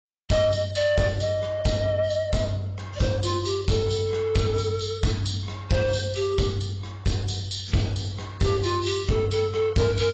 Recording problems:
lossy codec; AAC, log-spectral distance 5 dB, nothing above 7.6 kHz
distortion; soft clipping, signal-to-distortion ratio 11 dB

